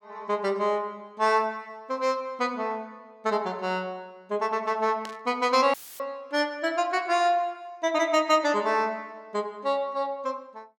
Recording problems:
burst of static; at 5 s; peak -9 dB vs average level
audio cutting out; at 5.5 s; filled with static

